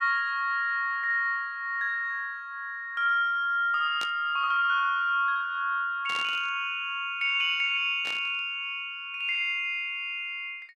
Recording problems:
burst of static; at 4 s, at 6 s and at 8 s; peak -6 dB vs average level

